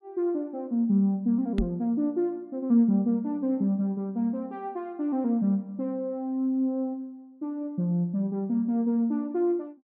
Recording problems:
microphone bump; at 1.5 s; peak +4 dB vs average level

